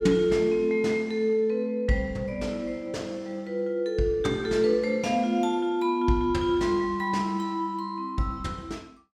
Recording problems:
none

